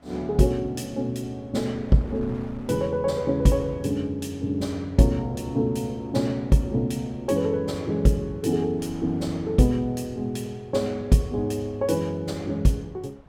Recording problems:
wind on the microphone; below 460 Hz, SNR 24 dB

